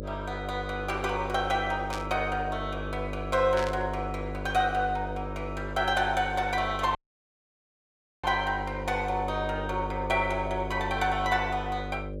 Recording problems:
electrical hum; 50 Hz, harmonics up to 600 Hz, SNR 8 dB
static burst; at 2 s and at 3.5 s; peak -4 dB vs average level
dropout; at 7 s for 1.5 s

